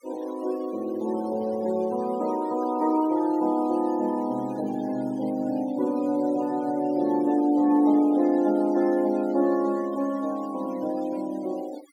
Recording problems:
denoising artefacts; signal-to-artefact ratio 23 dB

